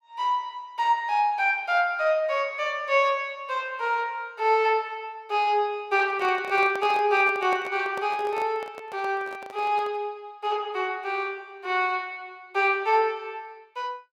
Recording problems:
handling noise; from 6 to 10 s; peak -7 dB vs average level

